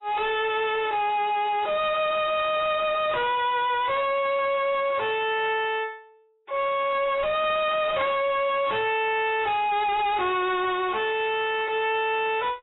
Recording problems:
codec artefacts; AAC, log-spectral distance 5 dB, nothing above 3.5 kHz
distorted audio; hard clipping, signal-to-distortion ratio 7 dB

